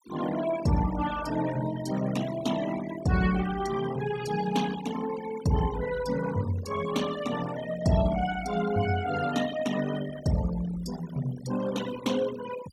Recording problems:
noise reduction artefacts; signal-to-artefact ratio 12 dB

